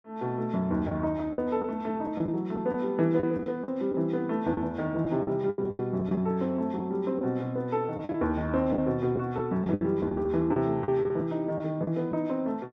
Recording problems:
lost packets; 9% of the sound replaced, filled with the last packet

